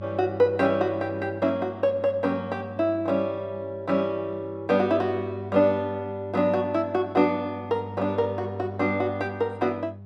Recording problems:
electrical hum; 50 Hz, harmonics up to 600 Hz, SNR 14 dB

